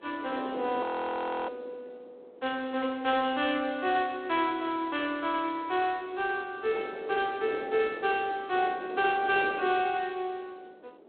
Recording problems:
phone line; 340 Hz to 3.9 kHz, G.726
wind noise; below 600 Hz, SNR 14 dB
audio freezing; at 1 s for 0.5 s

